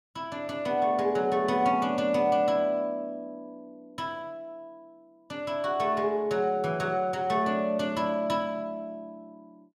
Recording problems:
none

